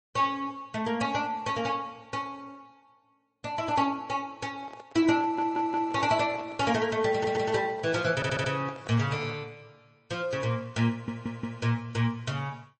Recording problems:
lossy codec; MP3, log-spectral distance 2 dB, nothing above 8.2 kHz
handling noise; from 4.5 to 9.5 s; peak -12 dB vs average level
stutter; 4 times, first at 5 s

